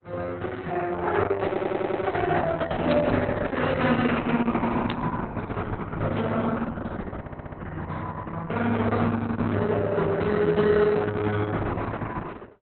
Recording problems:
lossy codec; Opus, log-spectral distance 4 dB, nothing above 4 kHz
audio stuttering; at 1.5 s and at 7 s
burst of static; at 3 s and at 5 s; peak -3 dB vs average level
audio freezing; at 9 s

